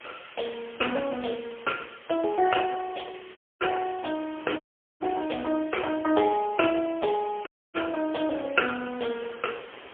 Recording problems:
telephone audio; 280 Hz to 2.5 kHz, AMR-NB, then MP3
hiss; SNR 19 dB
wind noise; below 1.6 kHz, SNR 23 dB
audio cutting out; at 3.5 s, at 4.5 s and at 7.5 s

